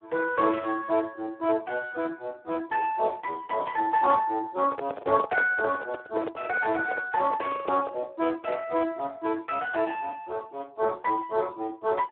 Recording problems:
phone line; 280 Hz to 3 kHz, Speex
handling noise; from 4.5 to 8 s; peak +2 dB vs average level

